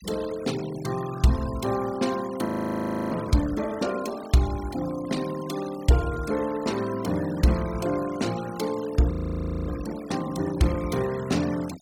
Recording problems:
noise reduction artefacts; signal-to-artefact ratio 16 dB
frozen audio; at 2.5 s for 0.5 s and at 9 s for 0.5 s

